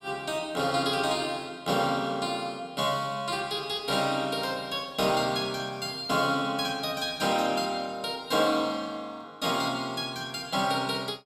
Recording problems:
none

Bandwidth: 15.5 kHz